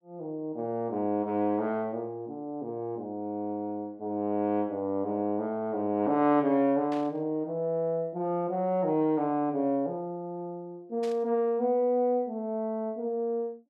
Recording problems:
burst of static; at 7 s and at 11 s; peak -11 dB vs average level

